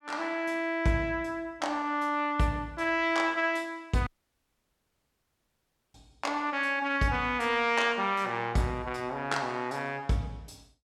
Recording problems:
audio cutting out; at 4 s for 2 s

